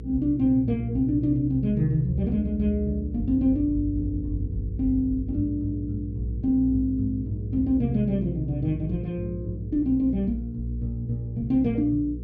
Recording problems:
electrical hum; 60 Hz, harmonics up to 480 Hz, SNR 11 dB

